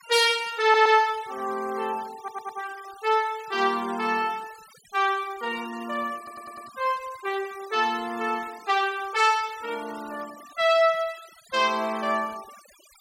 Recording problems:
noise reduction artefacts; signal-to-artefact ratio 21 dB
stutter; at 0.5 s, at 2 s and at 6 s

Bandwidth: 16.5 kHz